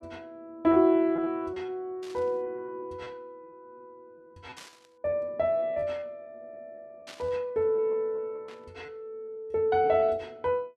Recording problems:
lost packets; 9% of the sound replaced, filled with repeated pitch periods
burst of static; 4 times, first at 2 s; peak -12 dB vs average level

